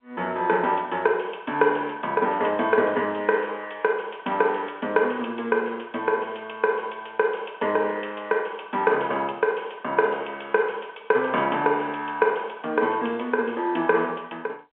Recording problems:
telephone audio; 260 Hz to 3.3 kHz, G.711

